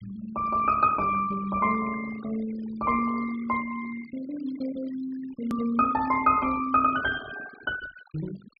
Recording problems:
treble missing; nothing above 5.5 kHz
denoising artefacts; signal-to-artefact ratio 16 dB
hard cut with a click; at 5.5 s

